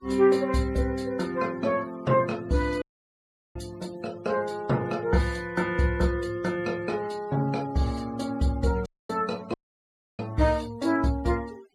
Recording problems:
noise reduction artefacts; signal-to-artefact ratio 23 dB
audio cutting out; at 3 s for 0.5 s, at 9 s and at 9.5 s for 0.5 s

